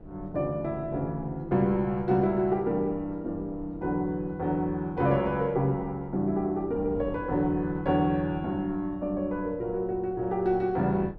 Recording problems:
wind noise; below 260 Hz, SNR 18 dB

